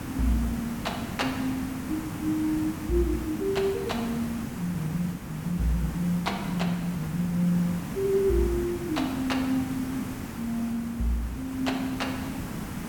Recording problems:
background hiss; slope -5 dB per octave, SNR 6 dB

